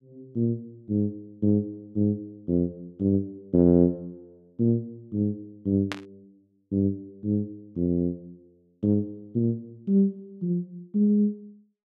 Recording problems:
burst of static; at 6 s; peak -2 dB vs average level

